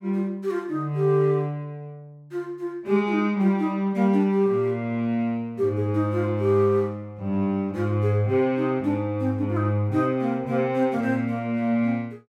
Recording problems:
none

